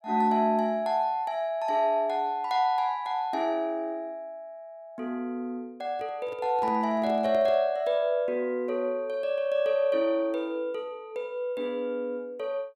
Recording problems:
microphone handling noise; from 6 to 7.5 s; peak -10 dB vs average level

